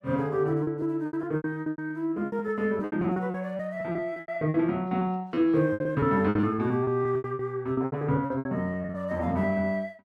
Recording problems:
lost packets; 19% of the sound replaced, filled with repeated pitch periods

